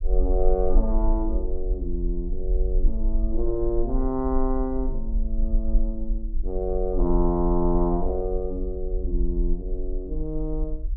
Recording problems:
low-frequency rumble; below 42 Hz, strongest tone 20 Hz, SNR 1 dB

